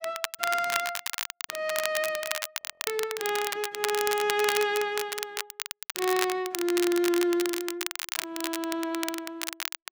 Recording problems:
crackling; vinyl, SNR 4 dB
audio freezing; at 2.5 s

